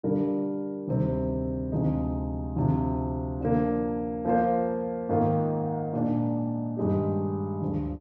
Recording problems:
none

